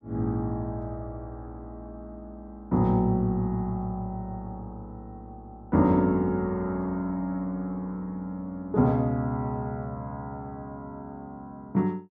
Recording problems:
none

